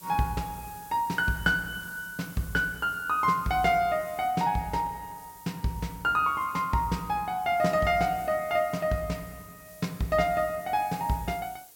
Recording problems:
background hiss; SNR 20 dB

